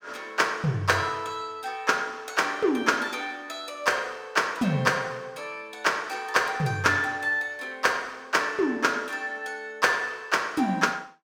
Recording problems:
none

